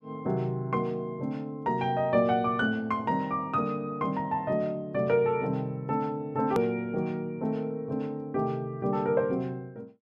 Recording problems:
edit click; at 6.5 s

